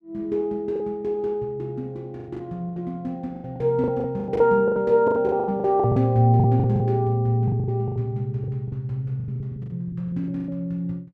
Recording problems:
lost packets; 16% of the sound replaced, filled with the last packet

